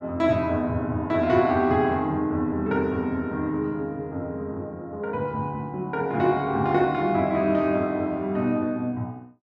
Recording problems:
none

